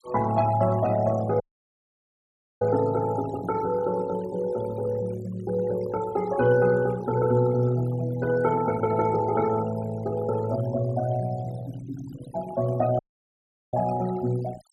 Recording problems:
denoising artefacts; signal-to-artefact ratio 17 dB
audio cutting out; at 1.5 s for 1 s and at 13 s for 0.5 s

